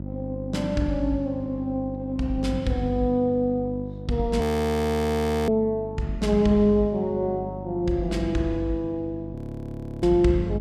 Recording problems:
hum; 50 Hz, harmonics up to 650 Hz, SNR 11 dB
frozen audio; at 4.5 s for 1 s and at 9.5 s for 0.5 s

